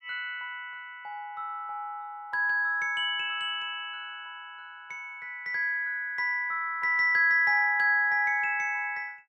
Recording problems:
none

